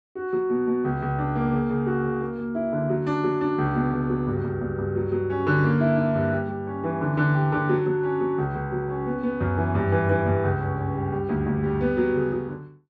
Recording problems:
none

